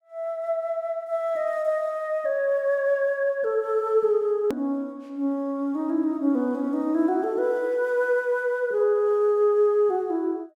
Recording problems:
edit click; at 4.5 s

